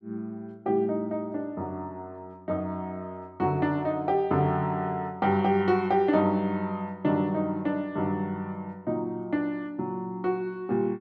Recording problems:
none

